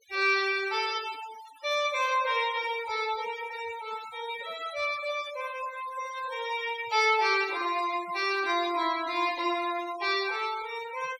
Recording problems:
noise reduction artefacts; signal-to-artefact ratio 15 dB

